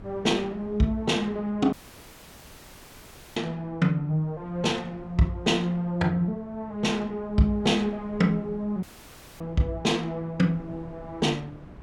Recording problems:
wind on the microphone; below 390 Hz, SNR 21 dB
dropout; at 1.5 s for 1.5 s and at 9 s for 0.5 s

